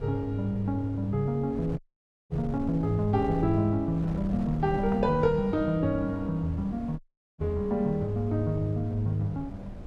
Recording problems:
wind noise; below 210 Hz, SNR 12 dB
dropout; at 2 s for 0.5 s and at 7 s

